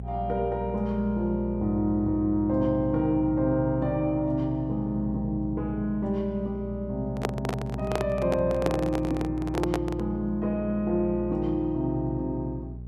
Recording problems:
electrical hum; 60 Hz, harmonics up to 420 Hz, SNR 9 dB
handling noise; from 7 to 10 s; peak +3 dB vs average level

